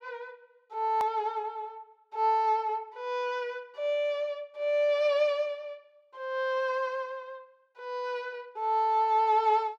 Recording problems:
click at an edit; at 1 s

